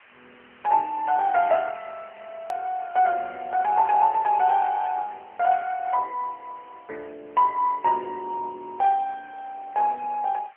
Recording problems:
phone line; 320 Hz to 3.2 kHz, AMR-NB
hiss; SNR 28 dB
edit click; at 2.5 s

